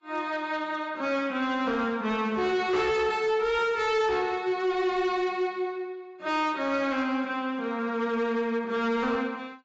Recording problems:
codec artefacts; AAC, log-spectral distance 2 dB, nothing above 7.3 kHz
distorted audio; hard clipping, uneven, signal-to-distortion ratio 12 dB

